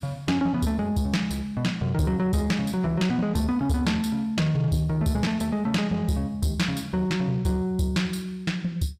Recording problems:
distorted audio; soft clipping, signal-to-distortion ratio 12 dB

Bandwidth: 15.5 kHz